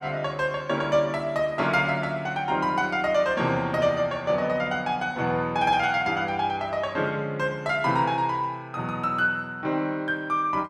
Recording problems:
none

